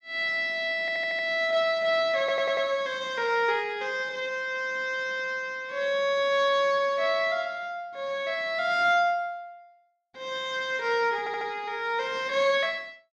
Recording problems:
audio stuttering; at 1 s, at 2 s and at 11 s

